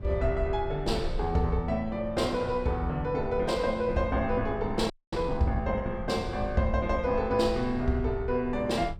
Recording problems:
low-frequency rumble; below 76 Hz, SNR 11 dB
frozen audio; at 5 s

